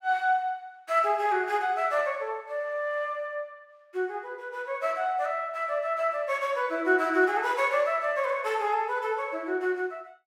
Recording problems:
none

